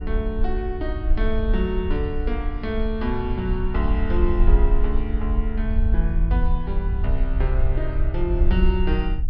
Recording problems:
treble missing; nothing above 5.5 kHz
low-frequency rumble; below 56 Hz, SNR -3 dB

